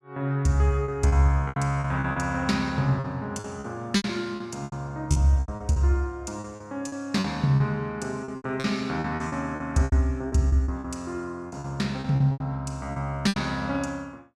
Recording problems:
packet loss; 14% of the sound replaced, filled with repeated pitch periods

